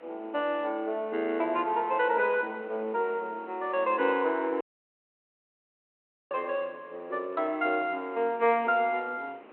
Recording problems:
telephone audio; 240 Hz to 3.2 kHz, G.726
wind noise; below 1.3 kHz, SNR 23 dB
dropout; at 4.5 s for 1.5 s

